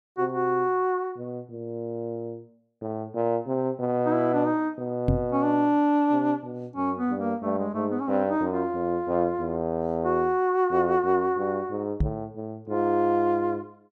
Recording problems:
microphone bump; at 5 s and at 12 s; peak +5 dB vs average level

